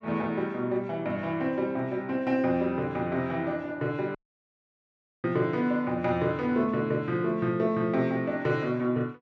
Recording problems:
audio cutting out; at 4 s for 1 s

